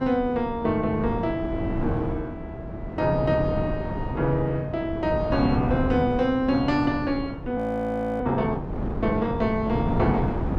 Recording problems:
wind on the microphone; below 370 Hz, SNR 5 dB
audio freezing; at 7.5 s for 0.5 s

